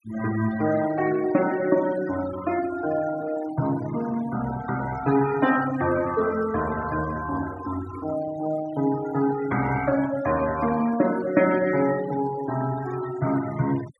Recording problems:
denoising artefacts; signal-to-artefact ratio 14 dB

